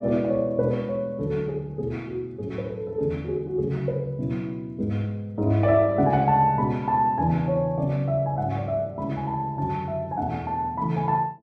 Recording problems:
none

